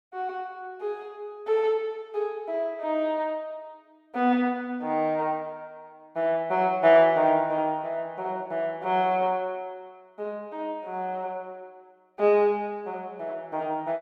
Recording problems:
none

